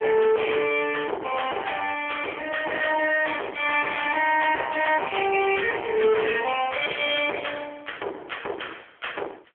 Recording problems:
phone line; 340 Hz to 3.3 kHz, AMR-NB
distorted audio; hard clipping, uneven, signal-to-distortion ratio 7 dB

